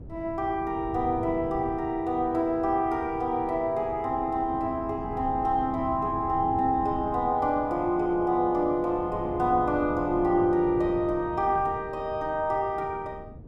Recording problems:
wind noise; below 240 Hz, SNR 14 dB

